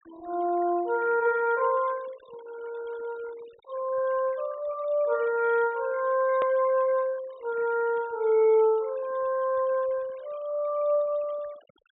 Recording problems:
treble cut off; nothing above 4 kHz
denoising artefacts; signal-to-artefact ratio 25 dB
click at an edit; at 6.5 s

